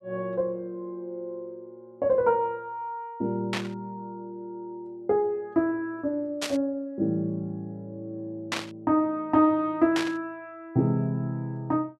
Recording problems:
burst of static; 4 times, first at 3.5 s; peak +4 dB vs average level

